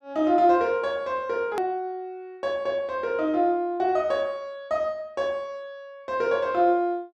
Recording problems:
click at an edit; at 1.5 s

